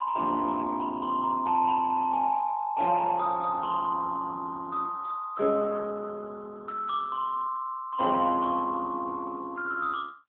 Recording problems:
phone line; 220 Hz to 3 kHz, AMR-NB

